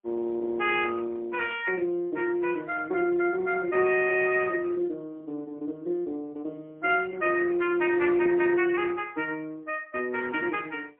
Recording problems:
telephone audio; 280 Hz to 3.3 kHz, AMR-NB, then MP3

